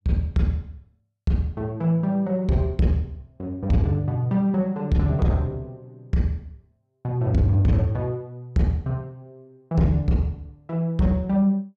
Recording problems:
distorted audio; soft clipping, signal-to-distortion ratio 11 dB

